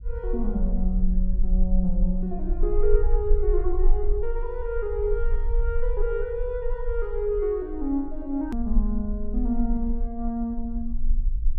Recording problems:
low-frequency rumble; below 38 Hz, strongest tone 20 Hz, SNR 1 dB
edit click; at 8.5 s

